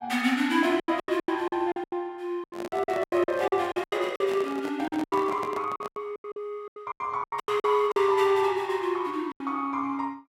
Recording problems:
packet loss; 17% of the sound replaced, filled with silence
handling noise; from 2.5 to 6 s; peak -6 dB vs average level

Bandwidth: 16.5 kHz